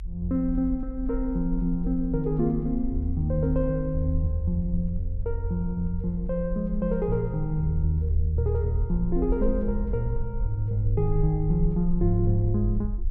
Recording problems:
low-frequency rumble; below 46 Hz, SNR 7 dB

